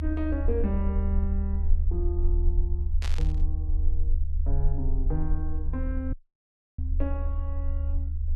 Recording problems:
low-frequency rumble; below 74 Hz, SNR -7 dB
static burst; at 3 s; peak +2 dB vs average level
dropout; at 6 s for 0.5 s

